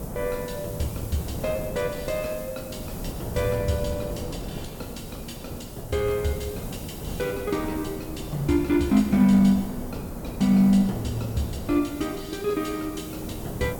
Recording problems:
background hiss; slope +5 dB per octave, SNR 18 dB
wind on the microphone; below 420 Hz, SNR 11 dB

